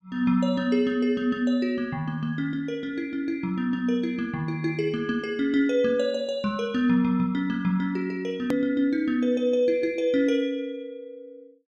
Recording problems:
hard cut with a click; at 8.5 s

